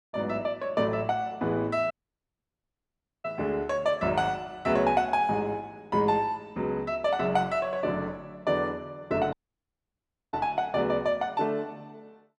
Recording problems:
audio cutting out; at 2 s for 1.5 s and at 9.5 s for 1 s

